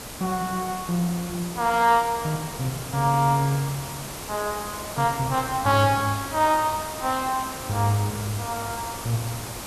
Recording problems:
hiss; slope -3 dB per octave, SNR 9 dB

